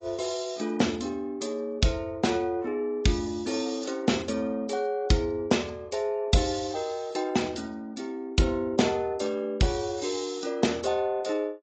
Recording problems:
lossy codec; AAC, log-spectral distance 4 dB, nothing above 7.6 kHz

